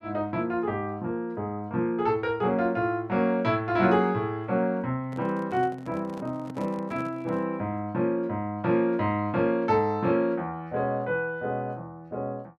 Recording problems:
microphone handling noise; from 5 to 7.5 s; peak -9 dB vs average level

